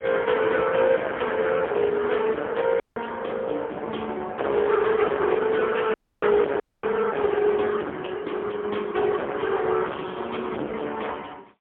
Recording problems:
phone line; 260 Hz to 3.3 kHz, AMR-NB, then MP3
distorted audio; hard clipping, uneven, signal-to-distortion ratio 7 dB
audio cutting out; at 3 s, at 6 s and at 6.5 s

